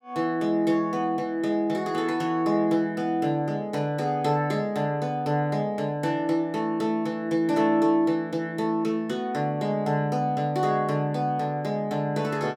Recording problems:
none

